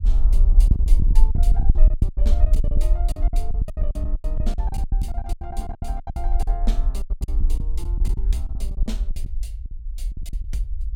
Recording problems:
rumble; below 48 Hz, SNR -14 dB
lost packets; 21% of the sound replaced, filled with silence

